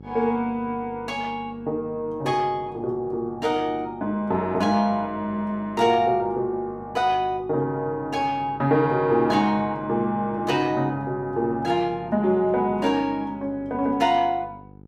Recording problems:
hum; 50 Hz, harmonics up to 900 Hz, SNR 21 dB

